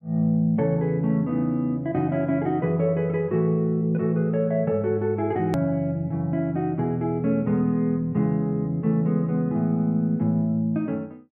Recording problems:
click at an edit; at 5.5 s

